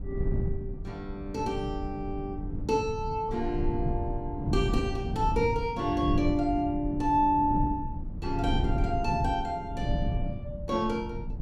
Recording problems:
wind noise; below 140 Hz, SNR 4 dB

